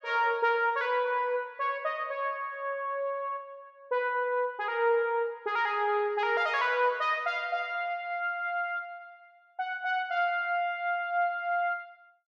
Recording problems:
none

